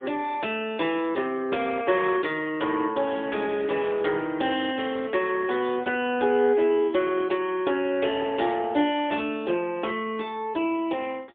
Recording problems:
phone line; 260 Hz to 3.5 kHz, AMR-NB, then MP3

